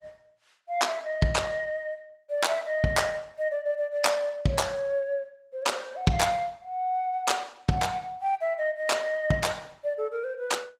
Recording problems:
lossy compression; Opus, log-spectral distance 3 dB

